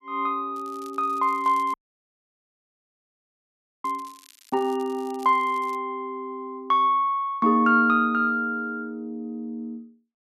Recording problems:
crackle; from 0.5 to 6 s; loose cable, SNR 27 dB
audio cutting out; at 1.5 s for 2 s

